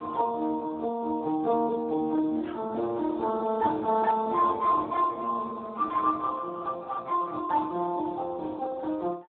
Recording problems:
phone line; 320 Hz to 2.1 kHz, Speex

